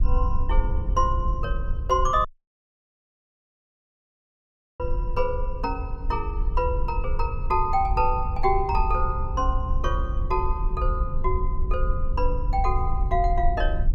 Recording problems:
rumble; below 60 Hz, strongest tone 20 Hz, SNR 1 dB
dropout; at 2.5 s for 2.5 s

